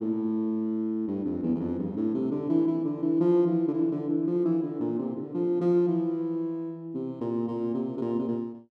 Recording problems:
none

